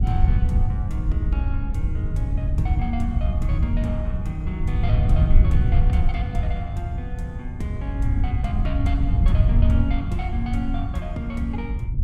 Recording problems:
wind noise; below 94 Hz, SNR -8 dB

